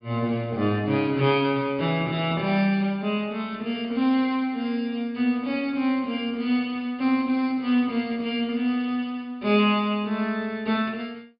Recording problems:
treble cut off; nothing above 5 kHz

